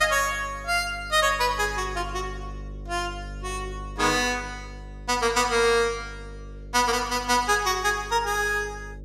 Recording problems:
hum; 50 Hz, harmonics up to 550 Hz, SNR 16 dB

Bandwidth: 15.5 kHz